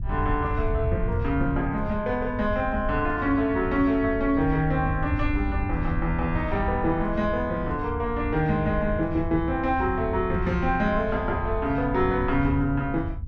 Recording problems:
wind on the microphone; below 94 Hz, SNR 7 dB

